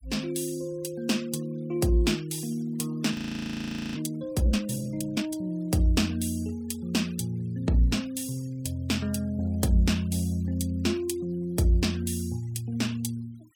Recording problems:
denoising artefacts; signal-to-artefact ratio 24 dB
frozen audio; at 3 s for 1 s

